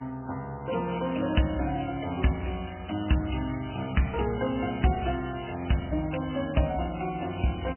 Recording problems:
lossy compression; MP3, log-spectral distance 7 dB, nothing above 3 kHz

